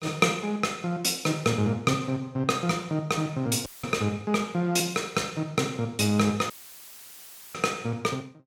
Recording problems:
dropout; at 3.5 s and at 6.5 s for 1 s; filled with static

